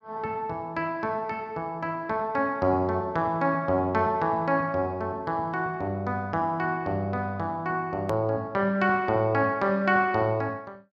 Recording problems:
edit click; at 8 s

